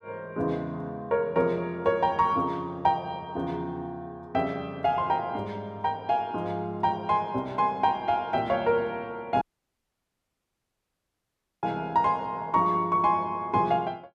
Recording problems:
audio cutting out; at 9.5 s for 2 s

